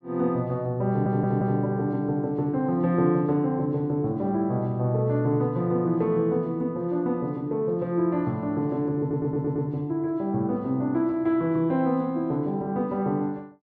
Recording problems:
audio stuttering; at 1 s and at 9 s

